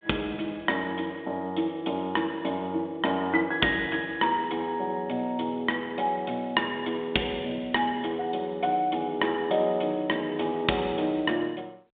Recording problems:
phone line; 240 Hz to 3.6 kHz, G.726

